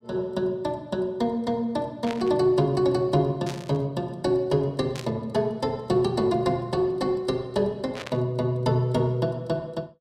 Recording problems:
static burst; 4 times, first at 2 s; peak -6 dB vs average level

